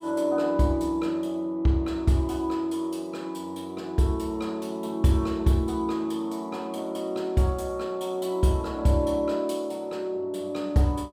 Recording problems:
none

